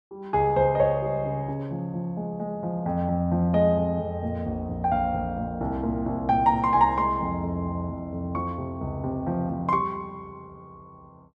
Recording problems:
none

